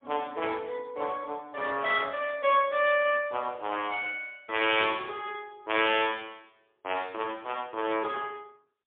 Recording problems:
phone line; 260 Hz to 3.5 kHz, AMR-NB, then MP3

